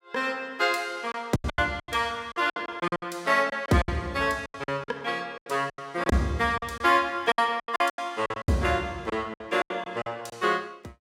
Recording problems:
packet loss; 15% of the sound replaced, filled with silence

